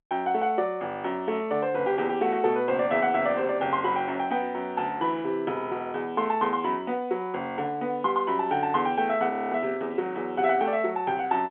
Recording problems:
telephone audio; 190 Hz to 3.6 kHz, G.711
frozen audio; at 9.5 s

